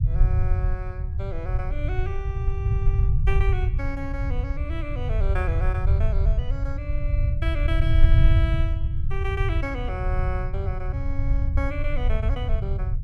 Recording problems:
low-frequency rumble; below 84 Hz, SNR -9 dB

